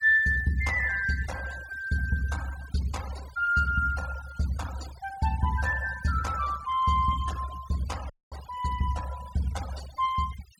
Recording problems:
denoising artefacts; signal-to-artefact ratio 17 dB
frozen audio; at 8 s

